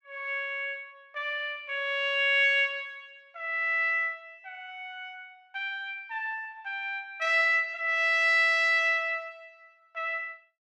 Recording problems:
none

